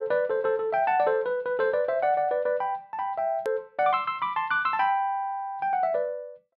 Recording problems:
click at an edit; at 3.5 s

